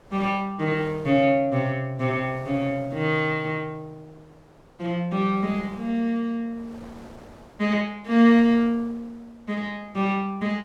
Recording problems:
wind noise; below 930 Hz, SNR 24 dB

